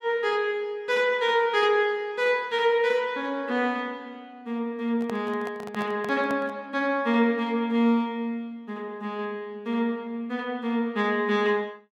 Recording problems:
handling noise; from 5 to 6.5 s; peak -8 dB vs average level

